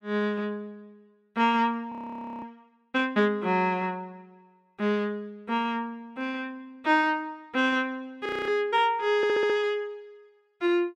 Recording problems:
audio freezing; at 2 s for 0.5 s and at 8.5 s
audio stuttering; at 9 s

